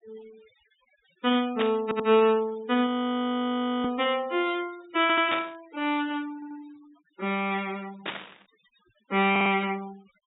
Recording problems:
treble missing; nothing above 4 kHz
noise reduction artefacts; signal-to-artefact ratio 23 dB
burst of static; at 1.5 s, at 5.5 s and at 8 s; peak 0 dB vs average level
audio stuttering; 4 times, first at 2 s
frozen audio; at 3 s for 1 s

